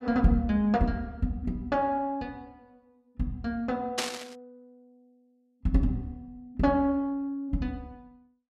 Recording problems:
static burst; at 4 s; peak +5 dB vs average level

